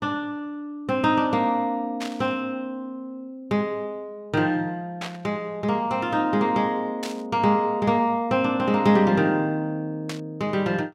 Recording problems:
static burst; 4 times, first at 2 s; peak -5 dB vs average level

